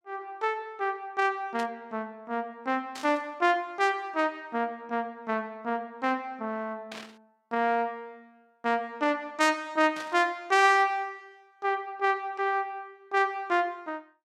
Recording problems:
burst of static; 4 times, first at 1.5 s; peak -9 dB vs average level

